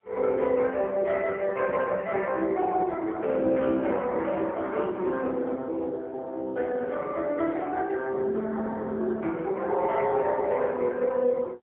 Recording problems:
phone line; 240 Hz to 2.6 kHz, AMR-NB, then MP3

